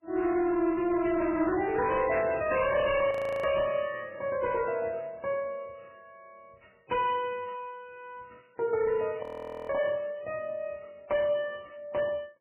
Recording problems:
lossy codec; MP3, then MP3, log-spectral distance 3 dB, nothing above 2.5 kHz
distortion; hard clipping, signal-to-distortion ratio 10 dB
burst of static; at 2.5 s; peak -12 dB vs average level
audio freezing; at 3 s and at 9 s

